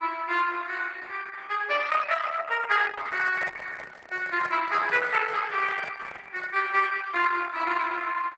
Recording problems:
codec artefacts; Opus, log-spectral distance 5 dB, nothing above 8 kHz
handling noise; from 3 to 6.5 s; peak -8 dB vs average level

